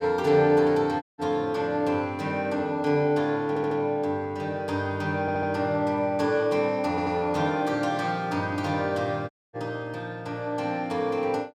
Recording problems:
dropout; at 1 s and at 9.5 s
stutter; at 3.5 s, at 5 s and at 7 s

